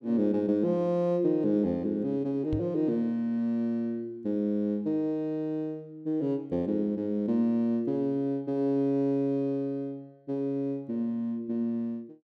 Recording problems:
microphone bump; at 2.5 s; peak -1 dB vs average level

